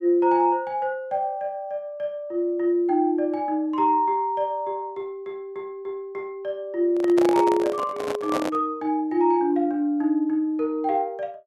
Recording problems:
microphone handling noise; from 7 to 8.5 s; peak +1 dB vs average level

